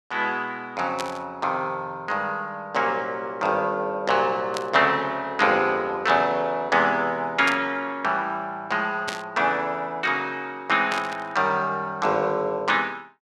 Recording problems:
static burst; 5 times, first at 1 s; peak -2 dB vs average level

